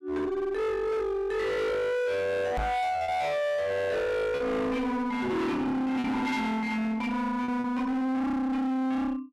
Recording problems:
distortion; hard clipping, uneven, signal-to-distortion ratio 6 dB
lost packets; 2% of the sound replaced, filled with repeated pitch periods
microphone thump; at 2.5 s; peak +2 dB vs average level

